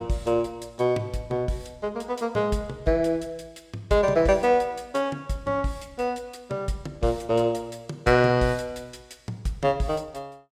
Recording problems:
none

